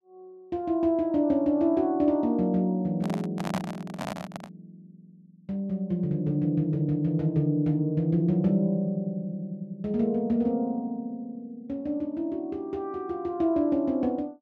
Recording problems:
handling noise; from 3 to 4.5 s; peak 0 dB vs average level

